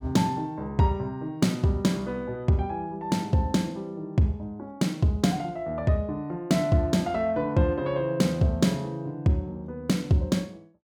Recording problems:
none

